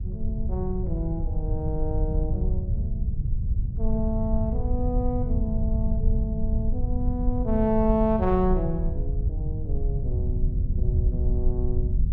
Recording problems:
rumble; below 84 Hz, SNR -2 dB

